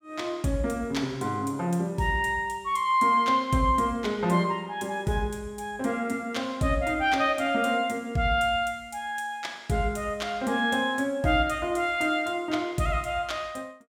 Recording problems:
none

